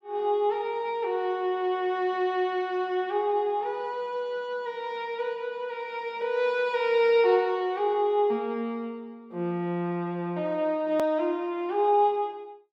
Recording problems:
edit click; at 11 s

